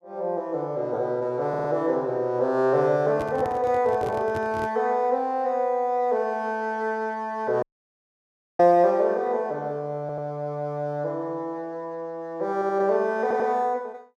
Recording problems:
audio stuttering; 4 times, first at 1.5 s
microphone handling noise; from 3 to 4.5 s; peak -6 dB vs average level
dropout; at 7.5 s for 1 s

